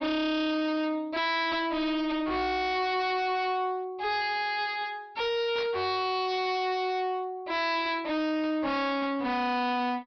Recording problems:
low-pass filter; nothing above 5.5 kHz
distortion; hard clipping, uneven, signal-to-distortion ratio 5 dB
burst of static; at 5.5 s; peak -9 dB vs average level

